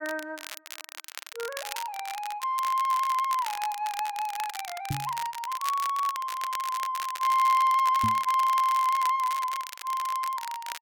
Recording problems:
crackling; vinyl, SNR 12 dB
knock on the microphone; at 5 s and at 8 s; peak 0 dB vs average level

